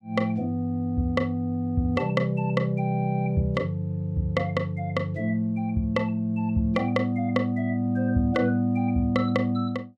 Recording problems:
none

